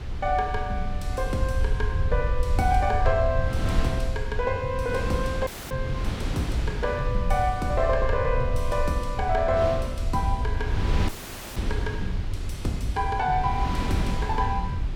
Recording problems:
rumble; below 76 Hz, SNR 3 dB
wind noise; below 430 Hz, SNR 7 dB
audio cutting out; at 5.5 s and at 11 s

